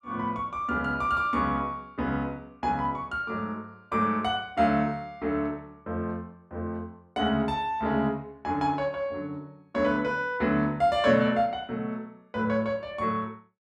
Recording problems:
none

